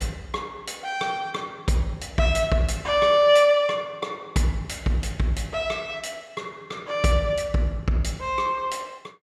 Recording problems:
none

